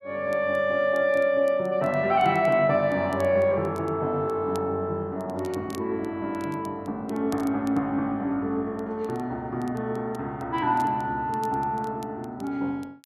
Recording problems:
crackling; vinyl, SNR 27 dB

